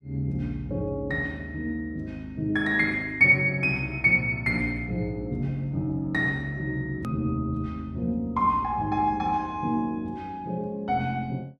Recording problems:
click at an edit; at 7 s

